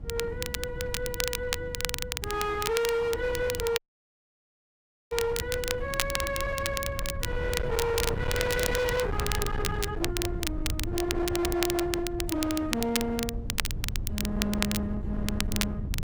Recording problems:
distortion; hard clipping, signal-to-distortion ratio 7 dB
low-frequency rumble; below 150 Hz, SNR 6 dB
wind noise; below 250 Hz, SNR 11 dB
crackling; vinyl, SNR 3 dB
audio cutting out; at 4 s for 1.5 s

